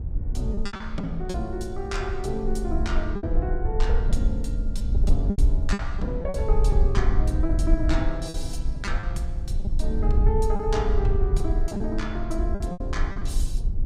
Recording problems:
low-frequency rumble; below 58 Hz, SNR -3 dB
packet loss; 8% of the sound replaced, filled with repeated pitch periods

